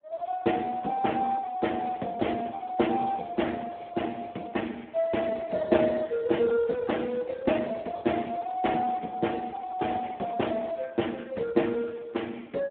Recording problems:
phone line; 190 Hz to 3.6 kHz, Speex

